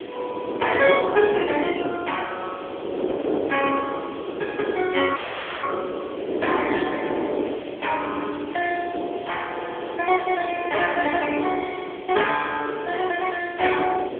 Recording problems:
phone line; 300 Hz to 3.5 kHz, AMR-NB
hiss; SNR 19 dB
wind noise; below 560 Hz, SNR 5 dB
audio freezing; at 5 s

